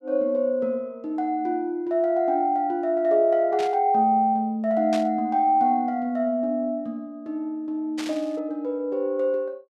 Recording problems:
static burst; at 3.5 s, at 5 s and at 8 s; peak -7 dB vs average level

